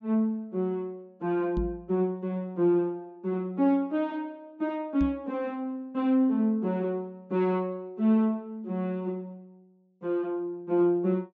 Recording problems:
low-pass filter; nothing above 8 kHz
microphone bump; at 1.5 s and at 5 s; peak 0 dB vs average level

